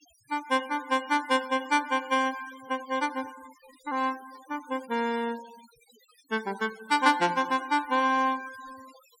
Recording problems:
denoising artefacts; signal-to-artefact ratio 20 dB

